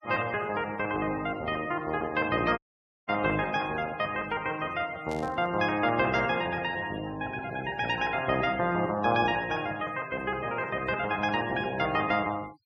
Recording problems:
noise reduction artefacts; signal-to-artefact ratio 19 dB
audio cutting out; at 2.5 s
static burst; at 5 s; peak -13 dB vs average level

